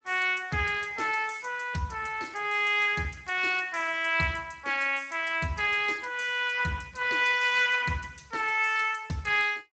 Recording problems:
lossy codec; Speex, log-spectral distance 6 dB, nothing above 7.8 kHz

